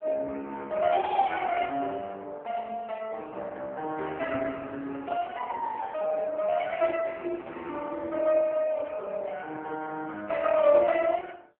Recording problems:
phone line; 280 Hz to 3.3 kHz, AMR-NB

